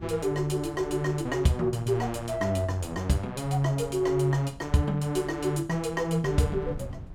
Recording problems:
wind on the microphone; below 160 Hz, SNR 17 dB

